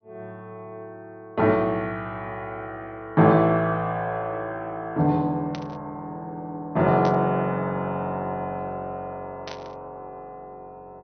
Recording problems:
low-pass filter; nothing above 6.1 kHz
burst of static; at 5.5 s, at 7 s and at 9.5 s; peak -9 dB vs average level

